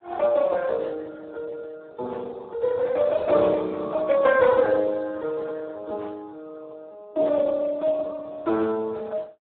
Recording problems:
telephone audio; 240 Hz to 3.7 kHz, Speex

